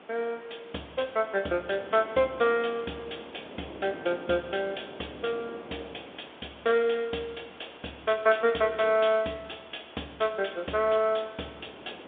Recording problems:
phone line; 260 Hz to 3.6 kHz, G.711
background hiss; SNR 22 dB
wind on the microphone; below 660 Hz, SNR 20 dB

